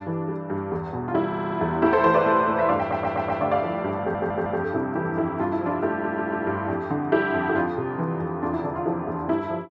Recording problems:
stutter; 4 times, first at 1.5 s

